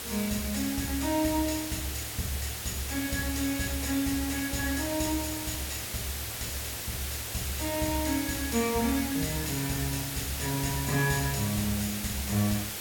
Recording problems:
hiss; slope -1 dB per octave, SNR 3 dB

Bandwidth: 17 kHz